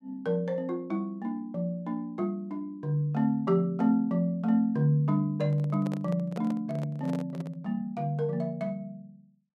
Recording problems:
handling noise; from 5.5 to 7.5 s; peak -6 dB vs average level

